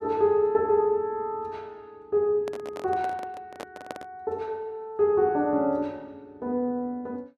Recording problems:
microphone handling noise; from 2.5 to 4 s; peak -6 dB vs average level

